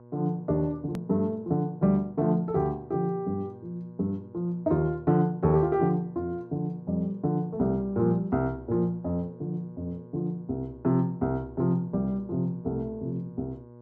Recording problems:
hum; 60 Hz, harmonics up to 1.1 kHz, SNR 21 dB
click at an edit; at 1 s

